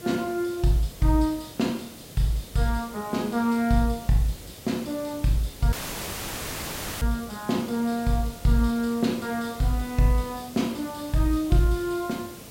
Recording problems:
hiss; SNR 16 dB
dropout; at 5.5 s for 1.5 s; filled with static

